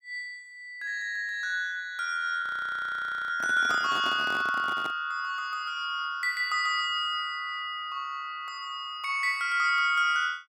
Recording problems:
audio freezing; at 2.5 s for 1 s
handling noise; from 3.5 to 5 s; peak -6 dB vs average level

